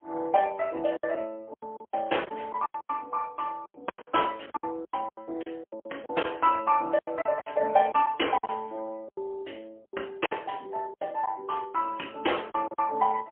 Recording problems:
phone line; 320 Hz to 3.2 kHz, AMR-NB, then MP3
lost packets; 14% of the sound replaced, filled with silence

